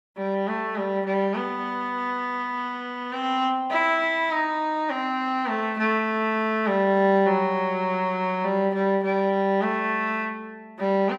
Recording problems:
none

